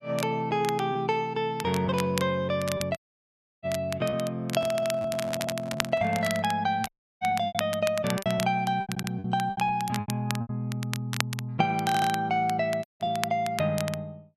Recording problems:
crackle; vinyl, SNR 10 dB
lost packets; 6% of the sound replaced, filled with repeated pitch periods
audio cutting out; at 3 s for 0.5 s, at 7 s and at 13 s
handling noise; from 4.5 to 6.5 s; peak -8 dB vs average level
audio stuttering; 4 times, first at 4.5 s

